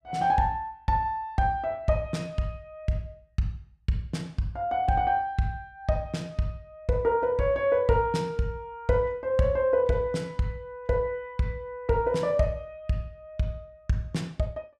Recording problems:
none

